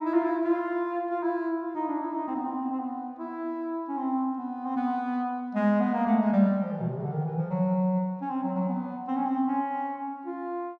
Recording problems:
none

